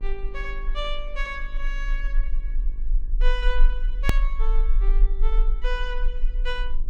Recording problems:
electrical hum; 50 Hz, harmonics up to 1.1 kHz, SNR 19 dB
low-frequency rumble; below 34 Hz, strongest tone 20 Hz, SNR -7 dB
edit click; at 4 s

